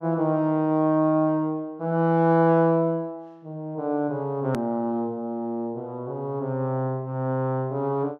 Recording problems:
edit click; at 4.5 s

